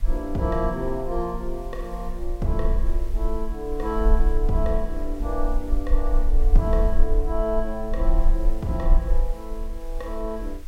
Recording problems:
hiss; slope -1 dB per octave, SNR 23 dB
low-frequency rumble; below 38 Hz, strongest tone 22 Hz, SNR -1 dB

